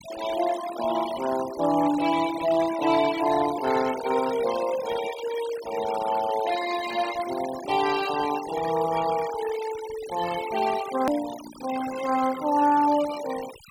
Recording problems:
denoising artefacts; signal-to-artefact ratio 13 dB
hard cut with a click; at 11 s

